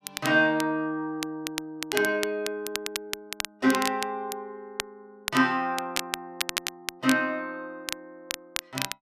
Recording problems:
crackling; vinyl, SNR 7 dB

